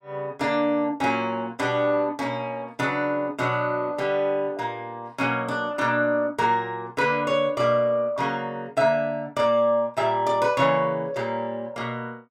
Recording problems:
none

